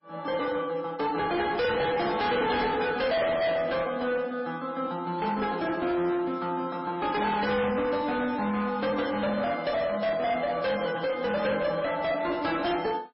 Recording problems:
lossy compression; MP3, log-spectral distance 3 dB, nothing above 5 kHz
distorted audio; hard clipping, signal-to-distortion ratio 7 dB

